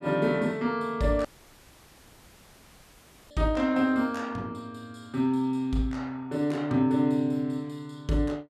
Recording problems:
dropout; at 1.5 s for 2 s

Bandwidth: 14 kHz